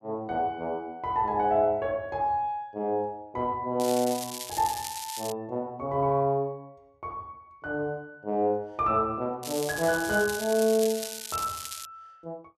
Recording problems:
crackle; from 4 to 5.5 s and from 9.5 to 12 s; loose cable, SNR 8 dB

